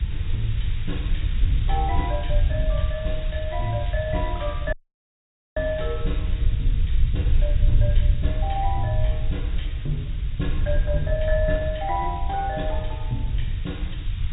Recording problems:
low-pass filter; nothing above 3.8 kHz
lossy compression; MP2, log-spectral distance 8 dB
hiss; SNR 15 dB
rumble; below 72 Hz, SNR -3 dB
audio cutting out; at 4.5 s for 1 s

